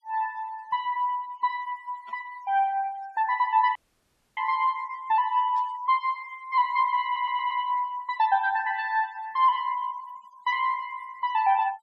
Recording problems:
denoising artefacts; signal-to-artefact ratio 28 dB
static burst; at 2 s and at 5.5 s; peak -22 dB vs average level
dropout; at 4 s for 0.5 s
audio stuttering; at 7 s

